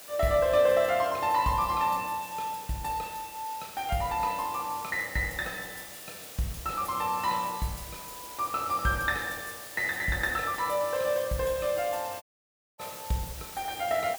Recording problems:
background hiss; SNR 13 dB
dropout; at 12 s for 0.5 s

